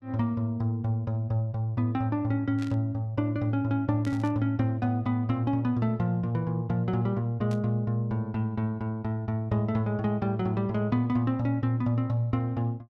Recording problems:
static burst; at 2.5 s, at 4 s and at 7.5 s; peak -12 dB vs average level

